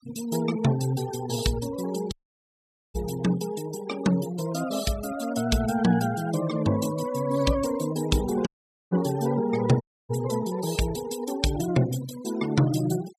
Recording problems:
noise reduction artefacts; signal-to-artefact ratio 15 dB
audio cutting out; at 2 s for 1 s, at 8.5 s and at 10 s

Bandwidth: 14.5 kHz